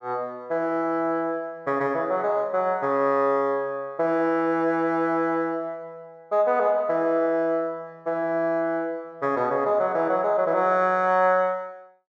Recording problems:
none

